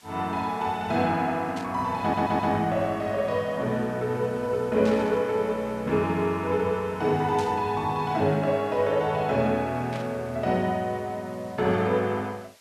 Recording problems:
background hiss; slope +1 dB per octave, SNR 27 dB
burst of static; 4 times, first at 1.5 s; peak -9 dB vs average level
audio stuttering; at 2 s

